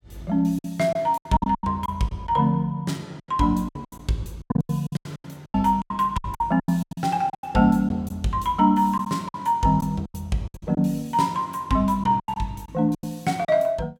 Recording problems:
packet loss; 15% of the sound replaced, filled with silence

